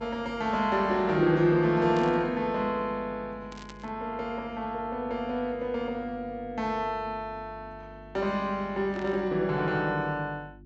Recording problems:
low-pass filter; nothing above 8 kHz
electrical hum; 50 Hz, harmonics up to 350 Hz, SNR 21 dB
burst of static; at 2 s, at 3.5 s and at 9 s; peak -11 dB vs average level

